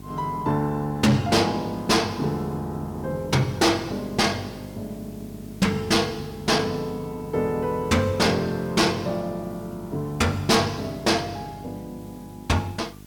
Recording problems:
distorted audio; hard clipping, uneven, signal-to-distortion ratio 11 dB
hum; 50 Hz, harmonics up to 800 Hz, SNR 18 dB
hiss; SNR 27 dB

